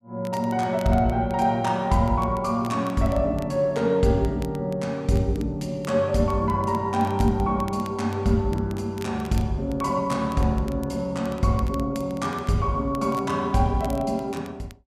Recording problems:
crackle; vinyl, SNR 24 dB

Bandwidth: 14.5 kHz